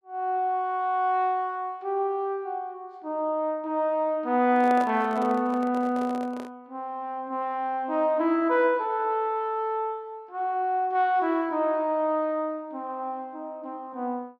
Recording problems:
microphone handling noise; from 4.5 to 6.5 s; peak -5 dB vs average level

